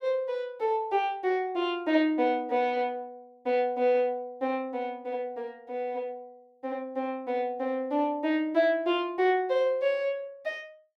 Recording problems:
none

